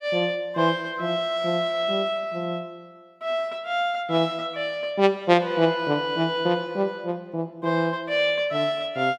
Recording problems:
none

